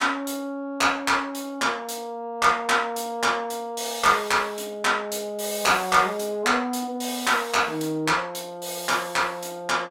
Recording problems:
none

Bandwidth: 16 kHz